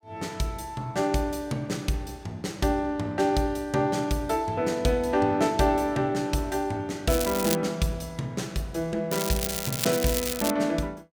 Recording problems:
crackle; at 7 s and from 9 to 11 s; loose cable, SNR 4 dB

